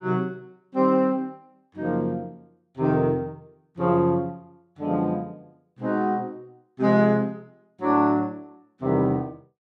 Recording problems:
none

